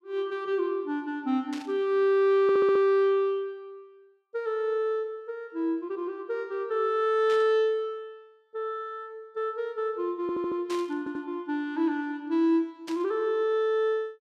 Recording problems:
burst of static; 4 times, first at 1.5 s; peak -10 dB vs average level
audio stuttering; at 2.5 s, at 10 s and at 11 s

